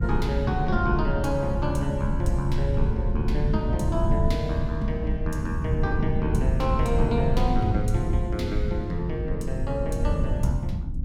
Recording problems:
hum; 50 Hz, harmonics up to 900 Hz, SNR 21 dB
low-frequency rumble; below 120 Hz, SNR 0 dB

